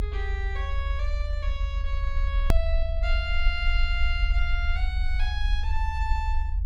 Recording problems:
rumble; below 64 Hz, SNR -5 dB
hard cut with a click; at 2.5 s

